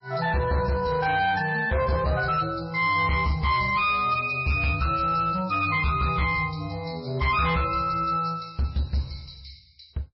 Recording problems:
codec artefacts; MP3, log-spectral distance 5 dB, nothing above 5.5 kHz
distorted audio; hard clipping, uneven, signal-to-distortion ratio 12 dB

